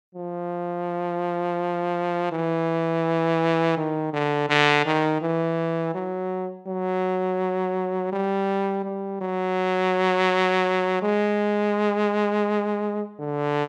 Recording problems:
none

